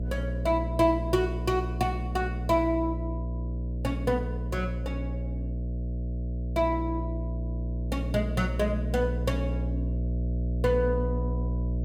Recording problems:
electrical hum; 60 Hz, harmonics up to 660 Hz, SNR 2 dB

